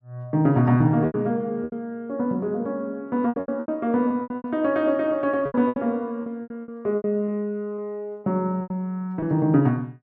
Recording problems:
packet loss; 12% of the sound replaced, filled with repeated pitch periods

